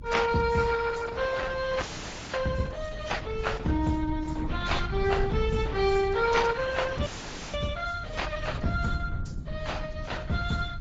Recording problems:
lossy codec; Opus, then AAC, log-spectral distance 5 dB, nothing above 7.3 kHz
rumble; below 120 Hz, SNR 9 dB
audio freezing; at 2 s for 0.5 s and at 7 s

